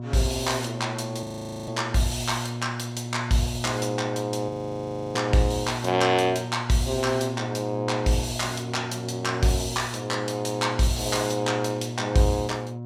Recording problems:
hum; 60 Hz, harmonics up to 960 Hz, SNR 8 dB
audio freezing; at 1 s and at 4.5 s for 0.5 s

